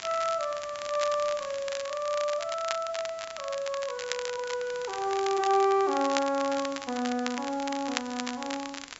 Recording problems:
low-pass filter; nothing above 8 kHz
hiss; slope -1 dB per octave, SNR 19 dB
crackle; vinyl, SNR 9 dB

